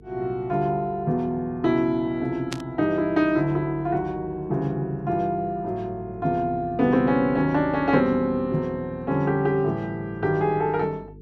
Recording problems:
electrical hum; 50 Hz, harmonics up to 450 Hz, SNR 23 dB
static burst; at 2.5 s; peak -4 dB vs average level

